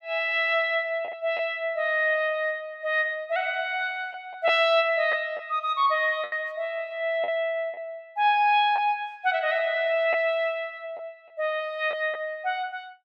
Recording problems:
lost packets; 3% of the sound replaced, filled with the last packet

